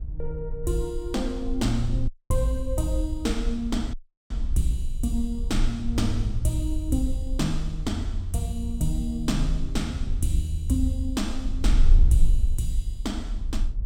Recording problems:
wind noise; below 50 Hz, SNR 1 dB
audio cutting out; at 2 s and at 4 s

